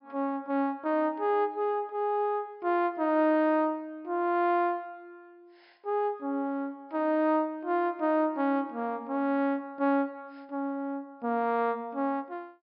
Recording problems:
low-pass filter; nothing above 5.5 kHz

